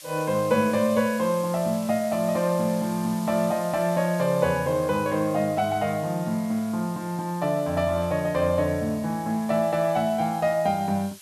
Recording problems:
hiss; slope +4 dB per octave, SNR 18 dB

